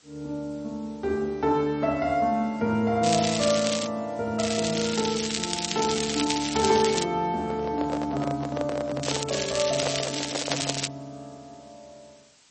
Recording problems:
codec artefacts; MP3, log-spectral distance 10 dB, nothing above 7.1 kHz
hiss; slope +1 dB per octave, SNR 26 dB
crackling; 4 times, first at 3 s; loose cable, SNR 3 dB
microphone handling noise; from 7.5 to 11 s; peak +2 dB vs average level

